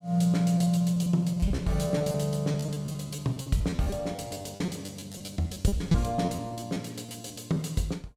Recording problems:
packet loss; 16% of the sound replaced, filled with repeated pitch periods

